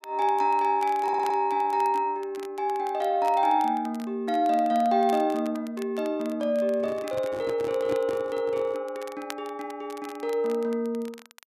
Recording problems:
crackling; vinyl, SNR 23 dB
audio stuttering; at 1 s
handling noise; from 7 to 9 s; peak -5 dB vs average level

